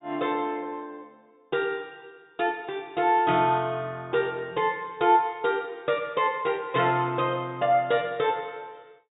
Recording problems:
treble cut off; nothing above 4 kHz

